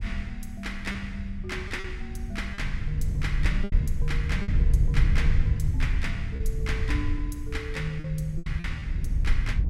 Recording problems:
low-frequency rumble; below 78 Hz, SNR -5 dB
lost packets; 5% of the sound replaced, filled with repeated pitch periods

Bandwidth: 16 kHz